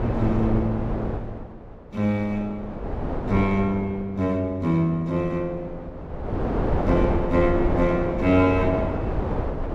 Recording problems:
wind noise; below 520 Hz, SNR 4 dB

